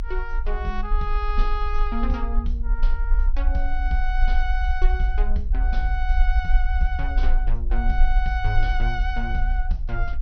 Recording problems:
treble cut off; nothing above 6.1 kHz
rumble; below 46 Hz, strongest tone 24 Hz, SNR -5 dB

